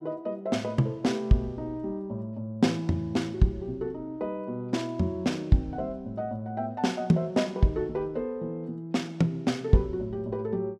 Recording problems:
none

